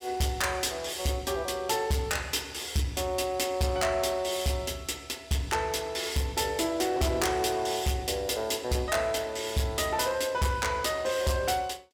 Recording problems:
distortion; soft clipping, signal-to-distortion ratio 11 dB

